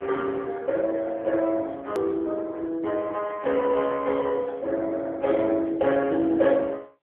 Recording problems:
telephone audio; 280 Hz to 3.4 kHz, AMR-NB
edit click; at 2 s

